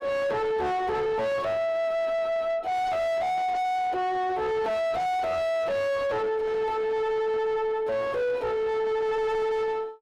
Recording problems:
distortion; soft clipping, signal-to-distortion ratio 5 dB

